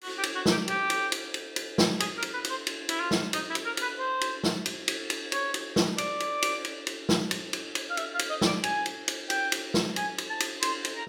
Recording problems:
none

